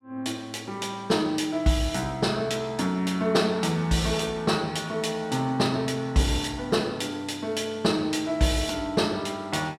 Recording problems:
none

